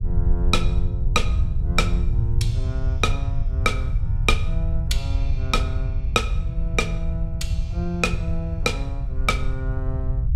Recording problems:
low-frequency rumble; below 86 Hz, SNR -1 dB

